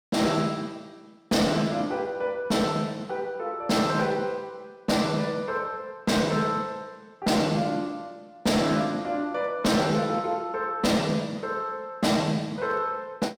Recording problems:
distortion; hard clipping, signal-to-distortion ratio 12 dB

